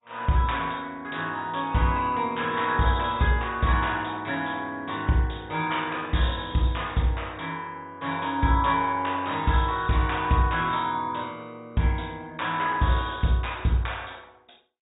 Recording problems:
treble missing; nothing above 3.8 kHz
lossy compression; MP2, log-spectral distance 5 dB

